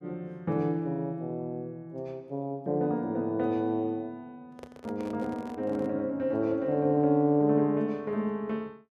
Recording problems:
microphone handling noise; from 4.5 to 6 s; peak -11 dB vs average level

